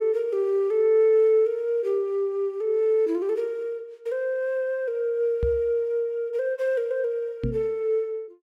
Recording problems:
microphone thump; at 5.5 s and at 7.5 s; peak 0 dB vs average level

